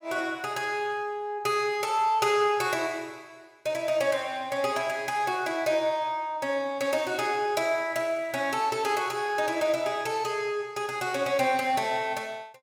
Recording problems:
none

